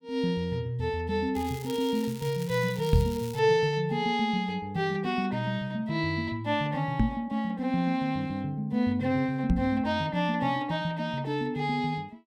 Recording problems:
crackle; from 1.5 to 3.5 s; loose cable, SNR 17 dB
knock on the microphone; at 3 s, at 7 s and at 9.5 s; peak +8 dB vs average level

